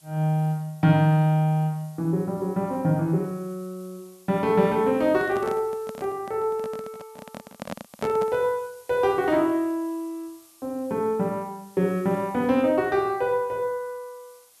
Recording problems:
background hiss; SNR 28 dB
handling noise; from 5 to 8.5 s; peak -3 dB vs average level

